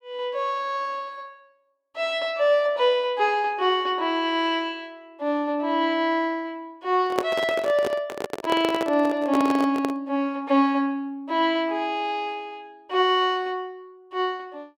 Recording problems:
handling noise; from 7 to 10 s; peak +3 dB vs average level

